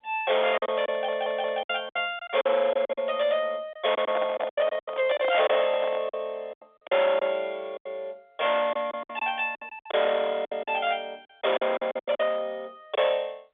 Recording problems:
telephone audio; 320 Hz to 3.6 kHz, G.711
distorted audio; hard clipping, signal-to-distortion ratio 11 dB
packet loss; 13% of the sound replaced, filled with silence
audio stuttering; at 1 s
handling noise; from 4 to 6 s; peak +1 dB vs average level

